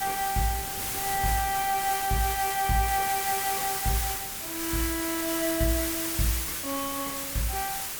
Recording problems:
background hiss; slope +1 dB per octave, SNR 1 dB
wind noise; below 530 Hz, SNR 19 dB

